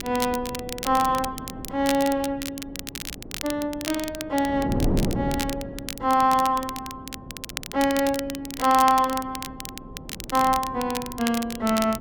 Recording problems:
wind on the microphone; below 330 Hz, SNR 11 dB
crackling; vinyl, SNR 10 dB

